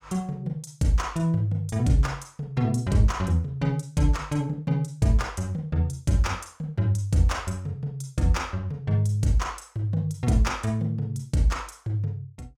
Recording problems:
none

